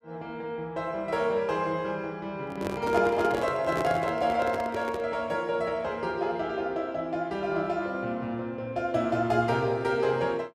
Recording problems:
microphone handling noise; from 2.5 to 5 s; peak +1 dB vs average level

